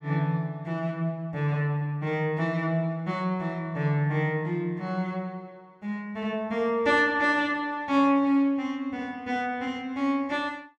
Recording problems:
none

